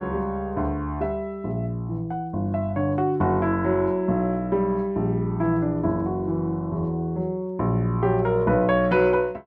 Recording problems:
none

